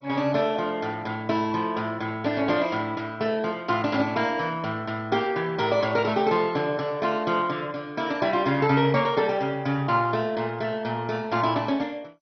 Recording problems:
codec artefacts; MP2, log-spectral distance 3 dB, nothing above 5.8 kHz

